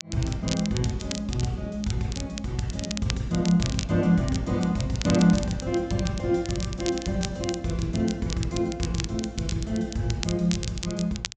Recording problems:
treble missing; nothing above 8 kHz
crackle; vinyl, SNR 11 dB

